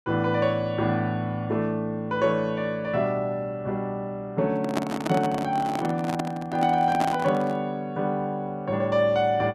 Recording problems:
microphone handling noise; from 4.5 to 7.5 s; peak +2 dB vs average level

